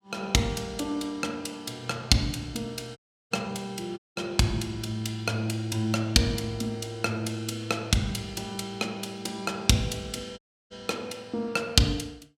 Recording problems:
audio cutting out; at 3 s, at 4 s and at 10 s

